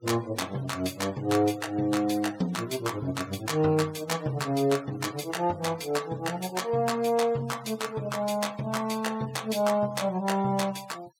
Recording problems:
denoising artefacts; signal-to-artefact ratio 21 dB

